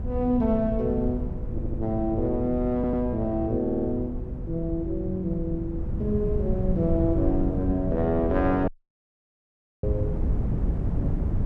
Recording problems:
hum; 60 Hz, harmonics up to 540 Hz, SNR 19 dB
wind noise; below 140 Hz, SNR 4 dB
audio stuttering; at 1.5 s, at 2.5 s and at 3.5 s
audio cutting out; at 8.5 s for 1 s

